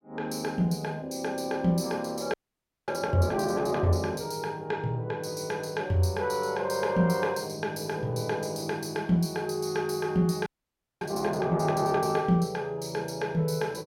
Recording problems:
audio freezing; at 2.5 s for 0.5 s and at 10 s for 0.5 s

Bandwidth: 16.5 kHz